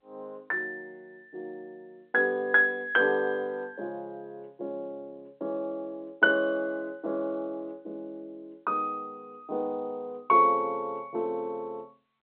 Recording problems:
telephone audio; 280 Hz to 3.3 kHz, G.711

